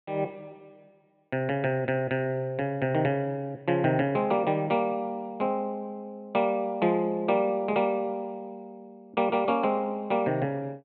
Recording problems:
treble cut off; nothing above 4 kHz

